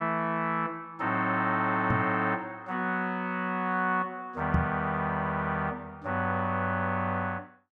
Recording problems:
microphone bump; at 2 s and at 4.5 s; peak +5 dB vs average level

